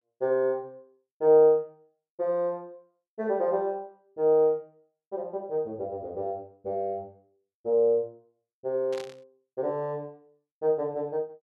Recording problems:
static burst; at 9 s; peak -12 dB vs average level

